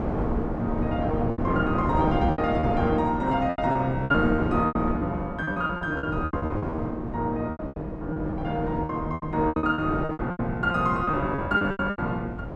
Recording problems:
electrical hum; 50 Hz, harmonics up to 550 Hz, SNR 19 dB
wind on the microphone; below 480 Hz, SNR 5 dB
packet loss; 16% of the sound replaced, filled with repeated pitch periods

